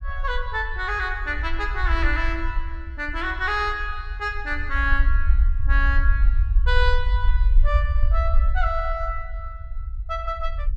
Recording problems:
rumble; below 56 Hz, SNR -1 dB

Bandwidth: 12 kHz